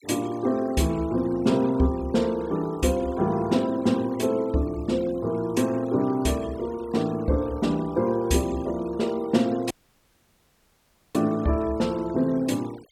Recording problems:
noise reduction artefacts; signal-to-artefact ratio 22 dB
audio cutting out; at 9.5 s for 1.5 s

